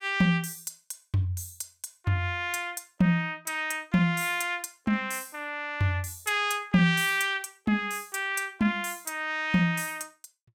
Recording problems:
none

